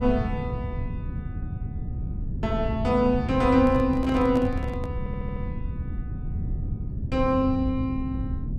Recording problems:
rumble; below 140 Hz, SNR 7 dB
handling noise; from 3.5 to 5 s; peak -7 dB vs average level
stutter; at 5 s

